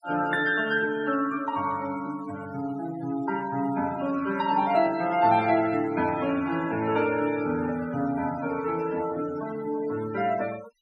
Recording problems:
denoising artefacts; signal-to-artefact ratio 16 dB

